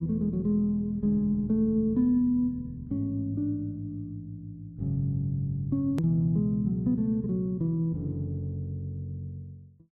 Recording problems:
click at an edit; at 6 s

